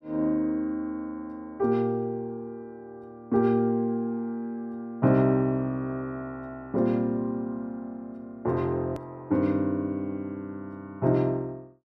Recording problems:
edit click; at 9 s

